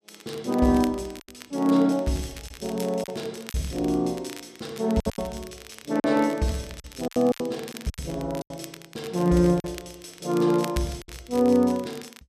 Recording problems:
crackling; vinyl, SNR 19 dB
lost packets; 8% of the sound replaced, filled with silence

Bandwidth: 14 kHz